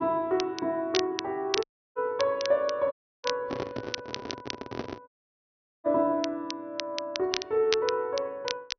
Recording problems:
treble cut off; nothing above 6.1 kHz
crackle; vinyl, SNR 7 dB
audio cutting out; at 1.5 s, at 3 s and at 5 s for 1 s
microphone handling noise; from 3.5 to 5 s; peak -1 dB vs average level

